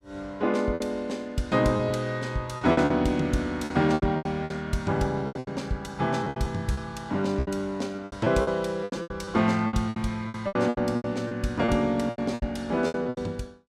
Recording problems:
lost packets; 15% of the sound replaced, filled with repeated pitch periods

